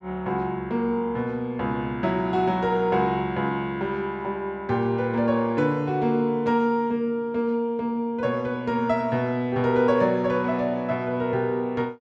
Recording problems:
none

